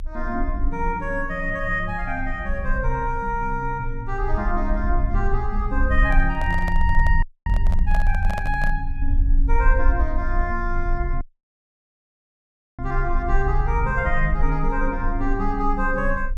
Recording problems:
rumble; below 46 Hz, strongest tone 26 Hz, SNR 1 dB
microphone handling noise; from 6 to 9 s; peak -2 dB vs average level
audio cutting out; at 7 s and at 11 s for 1.5 s

